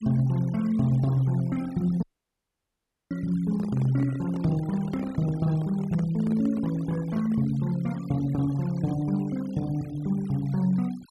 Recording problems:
noise reduction artefacts; signal-to-artefact ratio 23 dB
dropout; at 2 s for 1 s
handling noise; from 3.5 to 7.5 s; peak -8 dB vs average level

